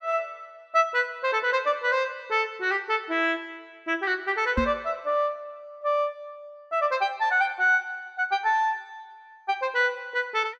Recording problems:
microphone thump; at 4.5 s; peak +3 dB vs average level

